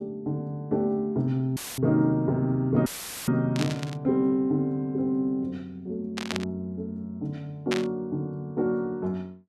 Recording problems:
audio cutting out; at 1.5 s and at 3 s; filled with static
static burst; at 3.5 s, at 6 s and at 7.5 s; peak +2 dB vs average level

